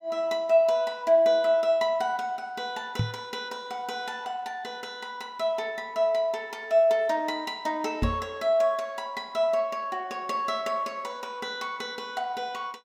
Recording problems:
microphone thump; at 3 s and at 8 s; peak +4 dB vs average level

